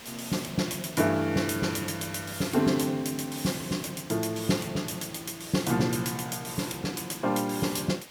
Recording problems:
background hiss; slope -2 dB per octave, SNR 16 dB

